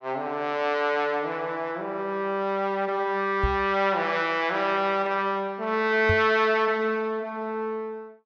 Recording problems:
microphone bump; at 3.5 s and at 6 s; peak +2 dB vs average level

